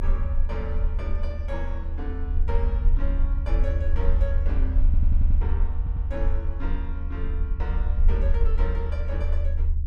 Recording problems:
rumble; below 72 Hz, strongest tone 24 Hz, SNR -11 dB
wind on the microphone; below 140 Hz, SNR 10 dB
audio stuttering; at 5 s and at 6 s

